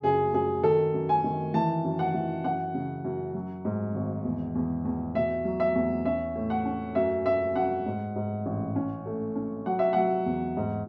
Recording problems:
none

